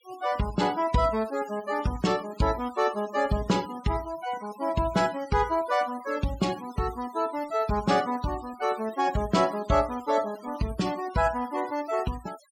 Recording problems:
denoising artefacts; signal-to-artefact ratio 18 dB

